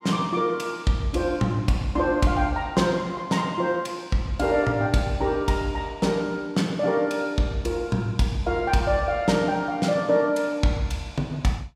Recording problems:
none

